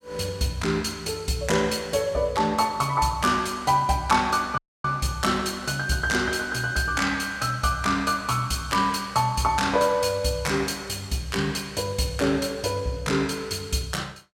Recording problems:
audio cutting out; at 4.5 s

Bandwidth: 16.5 kHz